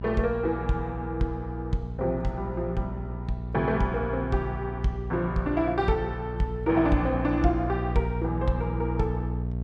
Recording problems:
mains hum; 60 Hz, harmonics up to 660 Hz, SNR 5 dB

